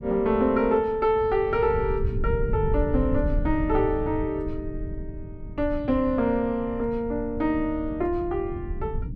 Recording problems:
rumble; below 100 Hz, SNR 8 dB

